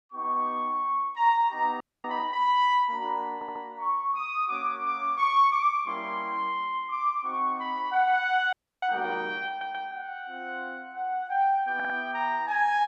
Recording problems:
audio freezing; at 2 s and at 8.5 s
stutter; at 3.5 s, at 9.5 s and at 12 s

